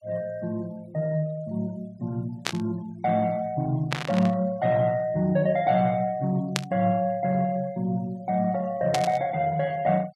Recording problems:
noise reduction artefacts; signal-to-artefact ratio 27 dB
burst of static; 4 times, first at 2.5 s; peak +4 dB vs average level

